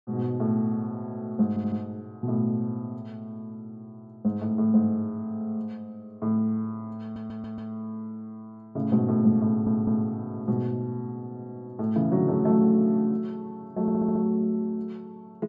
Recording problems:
audio stuttering; 4 times, first at 1.5 s

